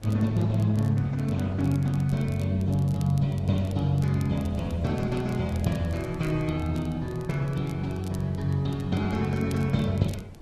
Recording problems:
lossy compression; Opus, log-spectral distance 2 dB
wind noise; below 250 Hz, SNR 18 dB
crackling; vinyl, SNR 25 dB

